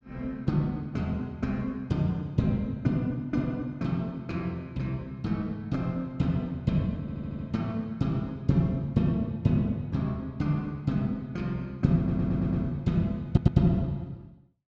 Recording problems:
stutter; at 7 s, at 12 s and at 13 s

